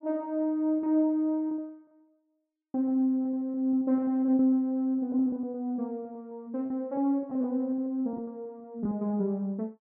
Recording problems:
packet loss; 10% of the sound replaced, filled with repeated pitch periods

